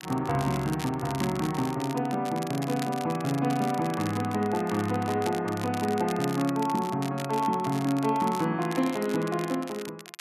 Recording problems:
crackling; vinyl, SNR 14 dB

